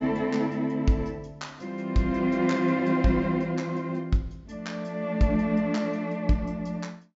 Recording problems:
treble cut off; nothing above 8 kHz

